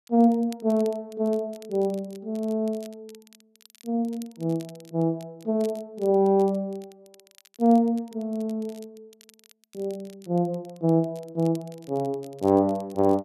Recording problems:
crackle; vinyl, SNR 27 dB

